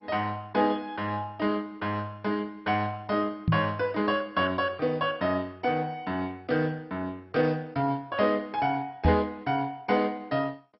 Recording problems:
lossy codec; MP2, log-spectral distance 3 dB, nothing above 4.9 kHz
knock on the microphone; at 3.5 s and at 9 s; peak +8 dB vs average level

